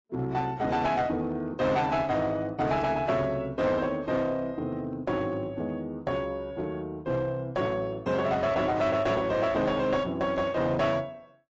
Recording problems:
codec artefacts; AAC, log-spectral distance 2 dB, nothing above 7.3 kHz
distortion; hard clipping, uneven, signal-to-distortion ratio 11 dB

